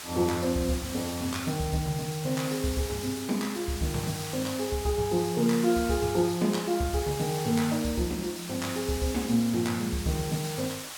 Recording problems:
background hiss; SNR 9 dB

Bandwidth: 17 kHz